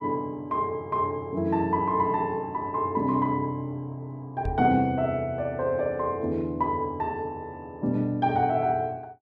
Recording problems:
knock on the microphone; at 4.5 s; peak -2 dB vs average level

